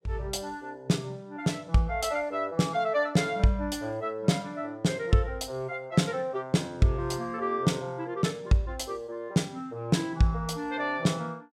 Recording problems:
none

